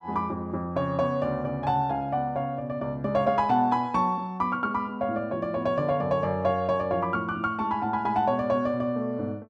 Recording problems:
none

